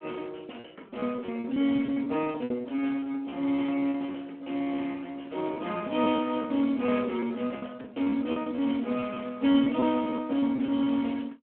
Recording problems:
phone line; 190 Hz to 3.3 kHz, Speex
packet loss; 13% of the sound replaced, filled with repeated pitch periods

